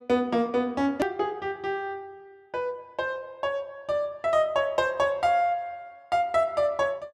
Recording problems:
click at an edit; at 1 s

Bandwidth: 12.5 kHz